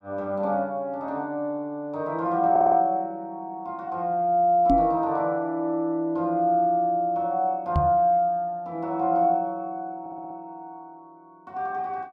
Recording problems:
stutter; at 2.5 s and at 10 s
microphone thump; at 4.5 s and at 8 s; peak +4 dB vs average level

